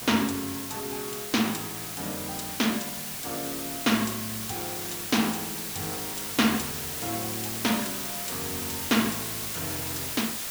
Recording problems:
hiss; slope 0 dB per octave, SNR 2 dB

